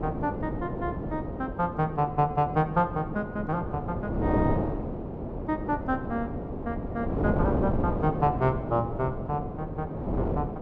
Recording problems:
wind on the microphone; below 470 Hz, SNR 2 dB

